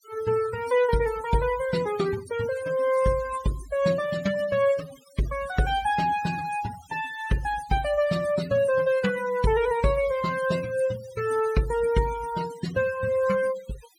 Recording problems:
denoising artefacts; signal-to-artefact ratio 16 dB

